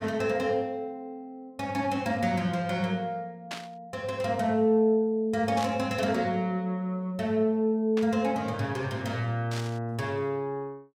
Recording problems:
burst of static; 4 times, first at 3.5 s; peak -4 dB vs average level

